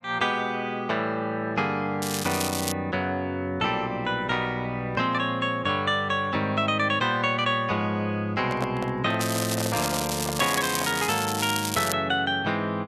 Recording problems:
crackle; at 2 s and from 9 to 12 s; loose cable, SNR 5 dB
microphone handling noise; from 8.5 to 11 s; peak -1 dB vs average level

